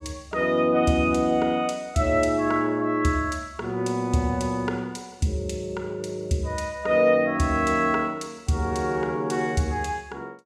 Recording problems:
none

